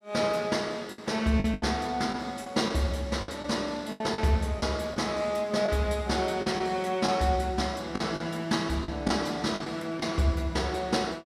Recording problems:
lost packets; 7% of the sound replaced, filled with the last packet

